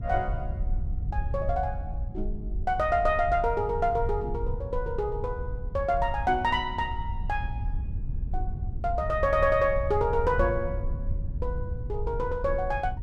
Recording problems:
rumble; below 82 Hz, SNR 6 dB

